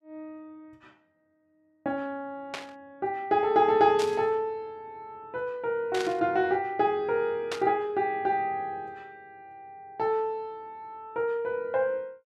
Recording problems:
static burst; 4 times, first at 2.5 s; peak -2 dB vs average level

